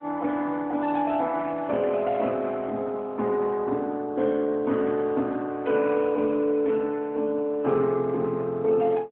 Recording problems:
telephone audio; 170 Hz to 3.6 kHz, AMR-NB

